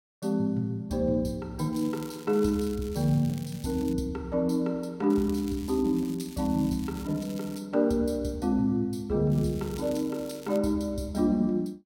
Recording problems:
crackle; from 1.5 to 4 s, from 5 to 7.5 s and from 9.5 to 11 s; loose cable, SNR 20 dB

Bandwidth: 16.5 kHz